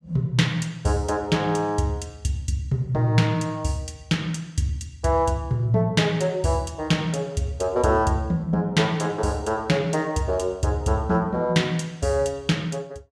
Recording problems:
none

